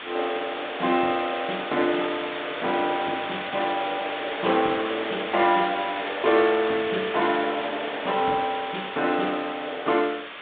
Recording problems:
telephone audio; 190 Hz to 3.7 kHz, G.726
hiss; SNR 8 dB

